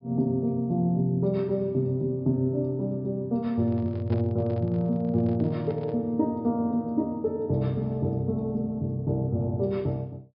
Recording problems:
treble missing; nothing above 5.5 kHz
microphone handling noise; from 3.5 to 6 s; peak -9 dB vs average level

